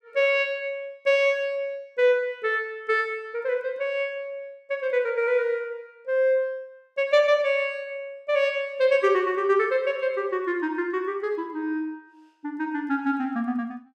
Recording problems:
none

